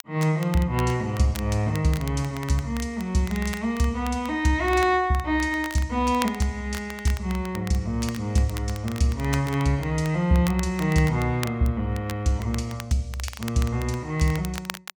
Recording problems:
crackle; vinyl, SNR 16 dB

